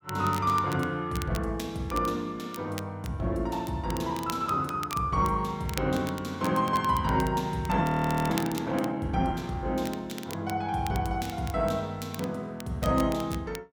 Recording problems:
crackling; vinyl, SNR 15 dB
frozen audio; at 8 s

